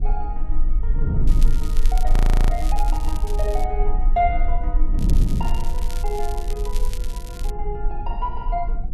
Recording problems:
low-frequency rumble; below 36 Hz, strongest tone 20 Hz, SNR -4 dB
wind noise; below 160 Hz, SNR 3 dB
crackle; from 1.5 to 3.5 s and from 5 to 7.5 s; loose cable, SNR 12 dB
frozen audio; at 2 s

